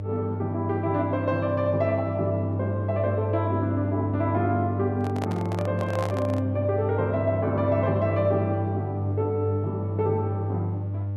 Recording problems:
hum; 50 Hz, harmonics up to 600 Hz, SNR 3 dB
microphone handling noise; from 5 to 6.5 s; peak -2 dB vs average level

